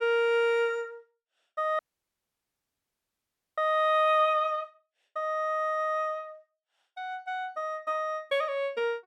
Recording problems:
dropout; at 2 s for 2 s

